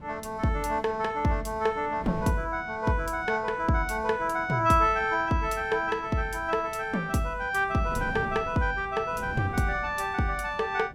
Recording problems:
wind on the microphone; below 260 Hz, SNR 16 dB

